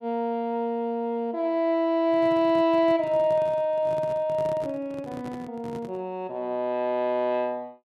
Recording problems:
handling noise; from 2 to 6 s; peak -9 dB vs average level

